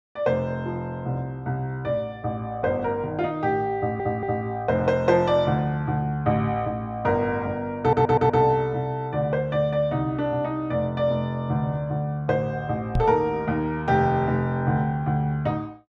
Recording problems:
stutter; at 4 s and at 8 s
microphone thump; at 13 s; peak +3 dB vs average level

